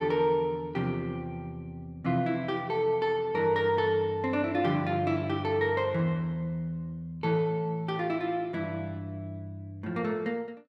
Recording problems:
none

